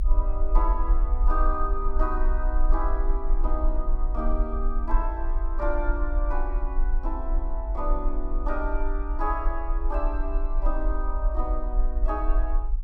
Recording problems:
low-frequency rumble; below 44 Hz, strongest tone 26 Hz, SNR -4 dB

